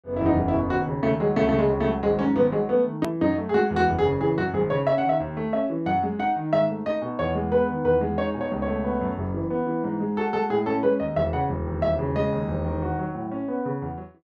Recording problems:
click at an edit; at 3 s

